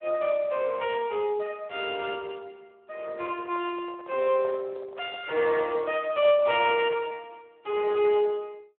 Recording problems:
telephone audio; 300 Hz to 3.4 kHz, Speex
handling noise; from 3.5 to 6 s; peak -12 dB vs average level

